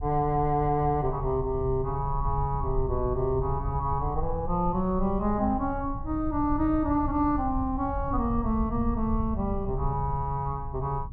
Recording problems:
low-frequency rumble; below 84 Hz, SNR 7 dB

